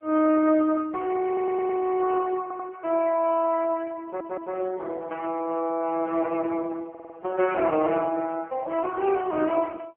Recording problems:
telephone audio; 220 Hz to 2.1 kHz, AMR-NB
audio stuttering; 4 times, first at 1.5 s

